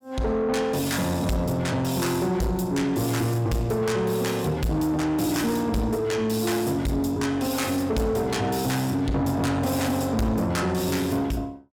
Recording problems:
distortion; soft clipping, signal-to-distortion ratio 10 dB

